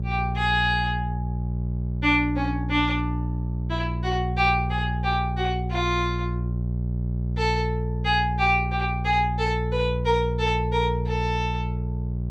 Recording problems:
hum; 60 Hz, harmonics up to 420 Hz, SNR 3 dB

